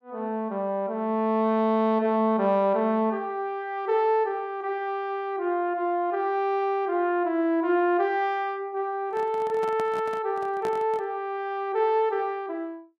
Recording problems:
handling noise; from 9 to 11 s; peak -6 dB vs average level

